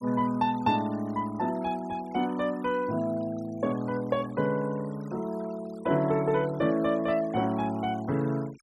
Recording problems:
denoising artefacts; signal-to-artefact ratio 22 dB

